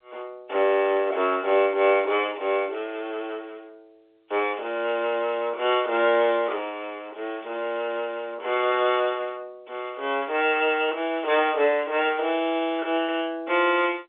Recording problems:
telephone audio; 300 Hz to 3.6 kHz, G.711

